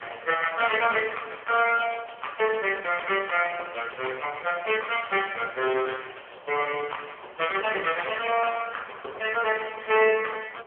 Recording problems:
telephone audio; 340 Hz to 3.2 kHz, AMR-NB
wind on the microphone; below 1.7 kHz, SNR 22 dB

